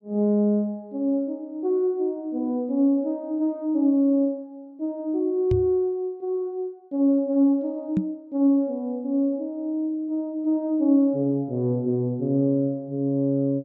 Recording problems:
microphone thump; at 5.5 s and at 8 s; peak +4 dB vs average level

